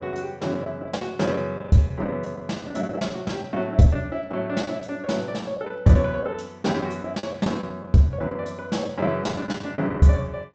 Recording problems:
low-pass filter; nothing above 8 kHz
packet loss; 10% of the sound replaced, filled with the last packet

